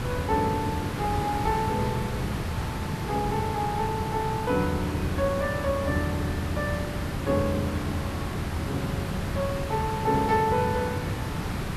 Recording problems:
background hiss; slope -5 dB per octave, SNR 2 dB

